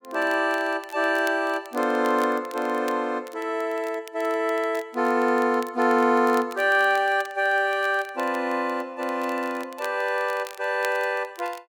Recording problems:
crackling; vinyl, SNR 22 dB

